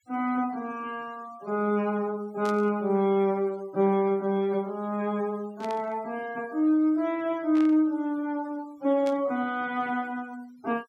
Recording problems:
noise reduction artefacts; signal-to-artefact ratio 26 dB
burst of static; 4 times, first at 2.5 s; peak -11 dB vs average level

